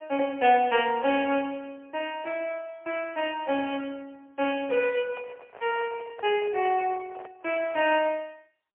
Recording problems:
phone line; 300 Hz to 3.2 kHz, AMR-NB, then MP3
handling noise; from 5 to 8 s; peak -14 dB vs average level

